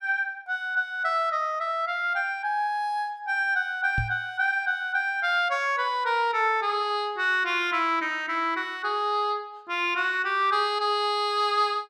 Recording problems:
microphone thump; at 4 s; peak -1 dB vs average level

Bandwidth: 14.5 kHz